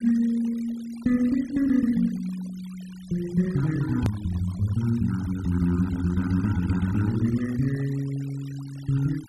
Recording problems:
noise reduction artefacts; signal-to-artefact ratio 21 dB
edit click; at 4 s

